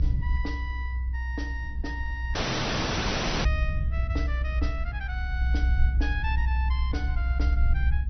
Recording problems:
treble cut off; nothing above 6 kHz
lossy codec; Opus, log-spectral distance 2 dB
rumble; below 64 Hz, strongest tone 62 Hz, SNR -8 dB
audio cutting out; at 2.5 s for 1 s

